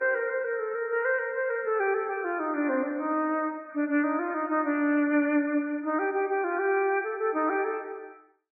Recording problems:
lossy codec; MP3, log-spectral distance 2 dB, nothing above 2.4 kHz

